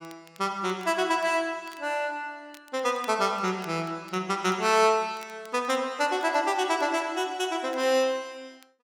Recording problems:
crackle; vinyl, SNR 27 dB

